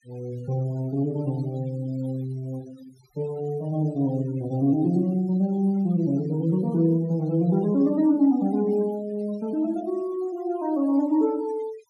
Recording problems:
noise reduction artefacts; signal-to-artefact ratio 23 dB

